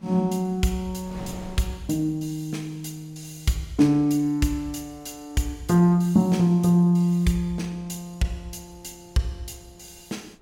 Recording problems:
wind on the microphone; below 450 Hz, SNR 26 dB

